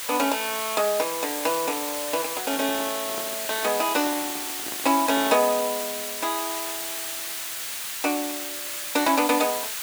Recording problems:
background hiss; SNR 3 dB
microphone handling noise; from 2.5 to 5.5 s; peak -8 dB vs average level

